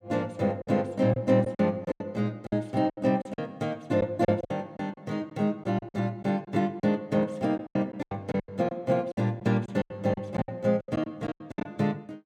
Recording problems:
packet loss; 13% of the sound replaced, filled with silence

